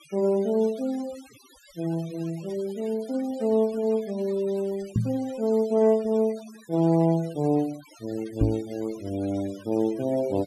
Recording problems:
noise reduction artefacts; signal-to-artefact ratio 22 dB
knock on the microphone; at 5 s and at 8.5 s; peak +7 dB vs average level

